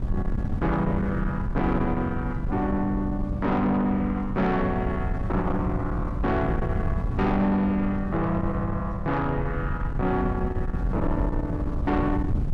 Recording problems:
distorted audio; soft clipping, signal-to-distortion ratio 11 dB
wind noise; below 160 Hz, SNR 4 dB

